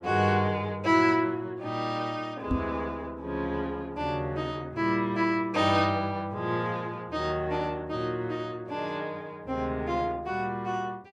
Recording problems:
microphone bump; at 2.5 s; peak +4 dB vs average level

